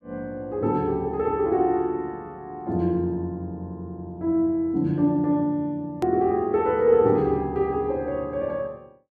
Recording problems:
click at an edit; at 6 s

